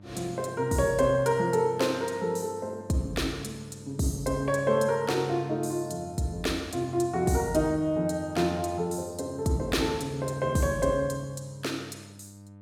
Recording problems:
hum; 50 Hz, harmonics up to 1.2 kHz, SNR 21 dB

